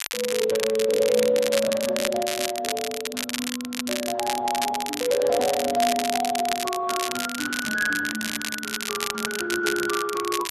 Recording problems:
codec artefacts; Speex, log-spectral distance 3 dB
crackle; vinyl, SNR 4 dB

